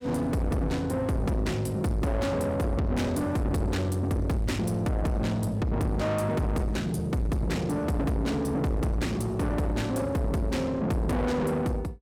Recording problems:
distortion; soft clipping, signal-to-distortion ratio 6 dB

